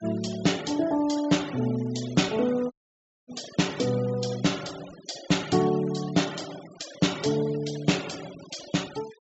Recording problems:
low-pass filter; nothing above 7.6 kHz
noise reduction artefacts; signal-to-artefact ratio 17 dB
audio cutting out; at 2.5 s for 0.5 s

